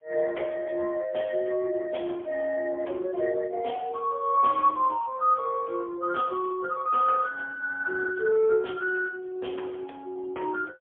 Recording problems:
phone line; 300 Hz to 2.8 kHz, AMR-NB, then MP3

